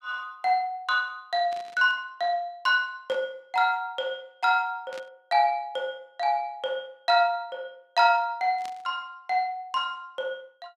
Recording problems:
static burst; 4 times, first at 1.5 s; peak -12 dB vs average level

